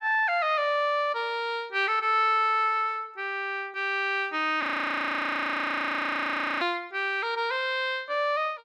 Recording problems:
frozen audio; at 4.5 s for 2 s

